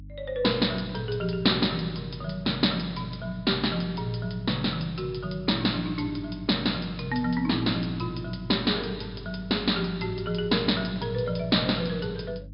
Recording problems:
treble cut off; nothing above 5.5 kHz
electrical hum; 50 Hz, harmonics up to 300 Hz, SNR 16 dB

